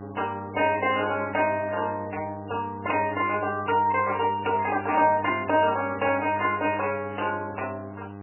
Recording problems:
lossy compression; MP3, log-spectral distance 4 dB, nothing above 2.5 kHz
hum; 50 Hz, harmonics up to 1.6 kHz, SNR 14 dB

